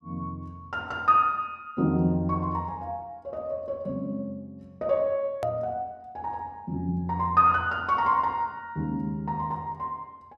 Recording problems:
click at an edit; at 5.5 s

